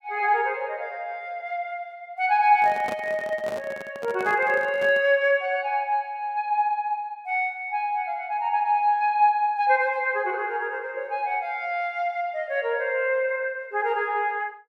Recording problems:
handling noise; from 2.5 to 5 s; peak -6 dB vs average level

